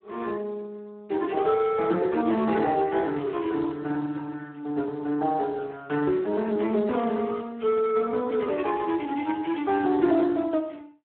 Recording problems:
phone line; 220 Hz to 3.6 kHz, Speex

